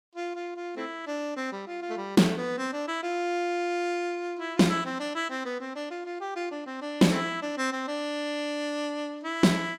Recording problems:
none

